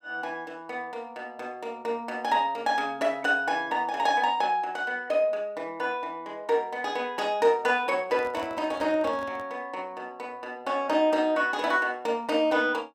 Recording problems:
microphone handling noise; from 8 to 9.5 s; peak -10 dB vs average level

